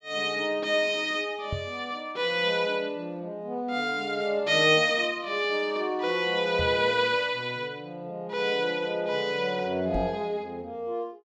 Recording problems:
microphone bump; at 1.5 s, at 6.5 s and at 10 s; peak -2 dB vs average level

